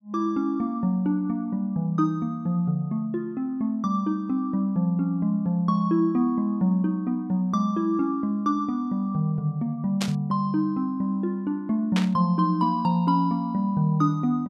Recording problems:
static burst; at 10 s and at 12 s; peak -1 dB vs average level

